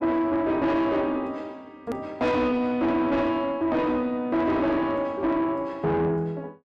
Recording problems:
distortion; soft clipping, signal-to-distortion ratio 10 dB
edit click; at 2 s

